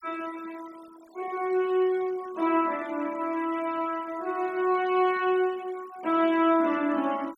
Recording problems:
denoising artefacts; signal-to-artefact ratio 24 dB

